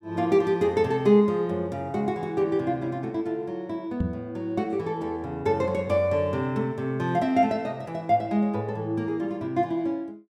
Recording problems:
microphone bump; at 4 s; peak +2 dB vs average level

